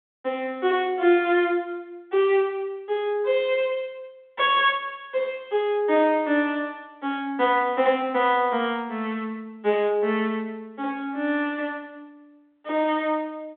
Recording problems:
phone line; 240 Hz to 3.6 kHz, G.726

